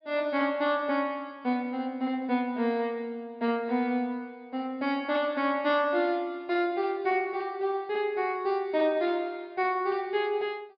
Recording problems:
treble missing; nothing above 5.5 kHz

